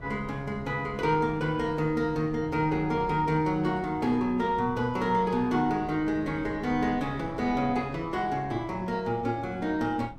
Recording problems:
wind noise; below 250 Hz, SNR 17 dB

